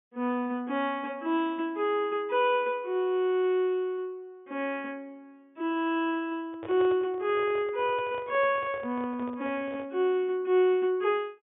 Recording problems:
treble cut off; nothing above 3.6 kHz
microphone handling noise; from 6.5 to 10 s; peak -9 dB vs average level

